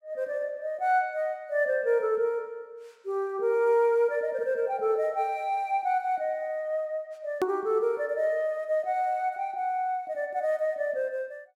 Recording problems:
click at an edit; at 7.5 s

